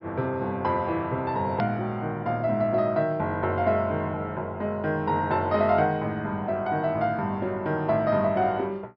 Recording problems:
treble missing; nothing above 5.3 kHz
edit click; at 1.5 s

